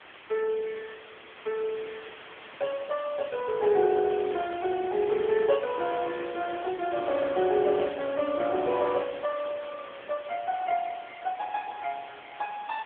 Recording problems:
telephone audio; 300 Hz to 3.4 kHz, AMR-NB
background hiss; SNR 16 dB

